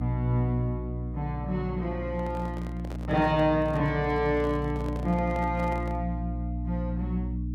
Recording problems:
hum; 60 Hz, harmonics up to 300 Hz, SNR 5 dB
handling noise; from 2 to 6 s; peak -9 dB vs average level

